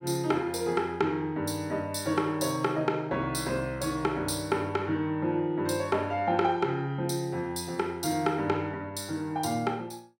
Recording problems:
none

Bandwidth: 16.5 kHz